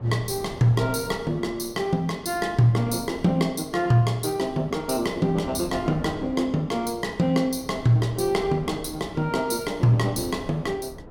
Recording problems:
wind noise; below 480 Hz, SNR 17 dB

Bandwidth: 17 kHz